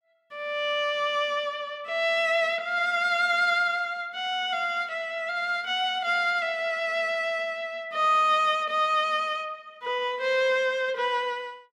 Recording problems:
none

